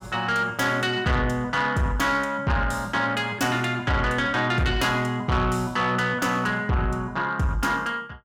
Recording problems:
distortion; soft clipping, signal-to-distortion ratio 11 dB

